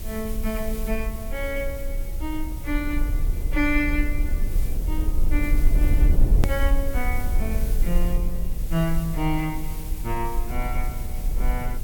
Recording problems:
background hiss; slope -1 dB per octave, SNR 12 dB
rumble; below 48 Hz, strongest tone 20 Hz, SNR -2 dB
hard cut with a click; at 6.5 s

